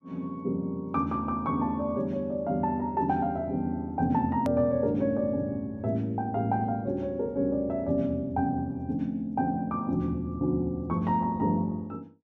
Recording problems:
edit click; at 4.5 s

